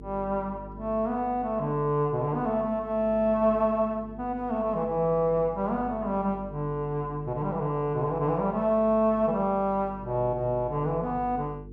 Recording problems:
hum; 50 Hz, harmonics up to 450 Hz, SNR 18 dB

